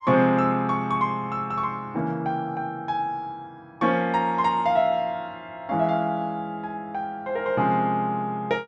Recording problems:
none

